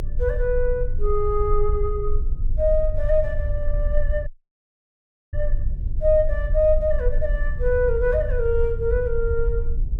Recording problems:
low-frequency rumble; below 52 Hz, strongest tone 20 Hz, SNR 3 dB
dropout; at 4.5 s for 1 s

